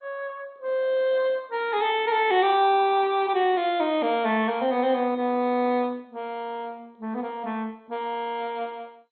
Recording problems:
lossy codec; MP2, log-spectral distance 3 dB, nothing above 3.7 kHz

